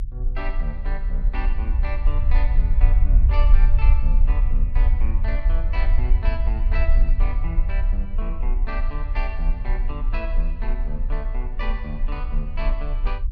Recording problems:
rumble; below 48 Hz, SNR -11 dB

